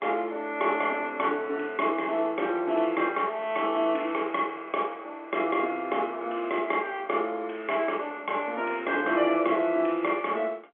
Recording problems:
phone line; 240 Hz to 3.3 kHz, G.711

